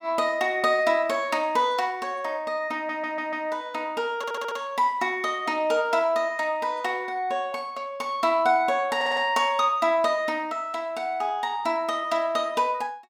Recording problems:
stutter; at 3 s, at 4 s and at 9 s

